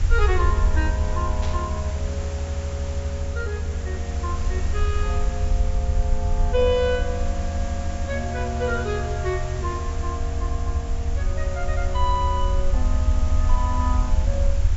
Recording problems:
treble cut off; nothing above 8 kHz
background hiss; slope -3 dB per octave, SNR 10 dB
rumble; below 78 Hz, SNR -3 dB
static burst; at 1.5 s; peak -4 dB vs average level

